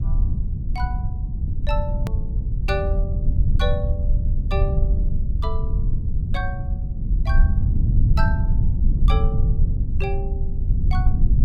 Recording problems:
low-frequency rumble; below 88 Hz, SNR -9 dB
edit click; at 2 s

